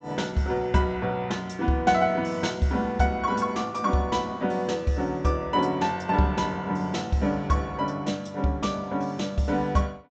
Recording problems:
treble cut off; nothing above 8 kHz

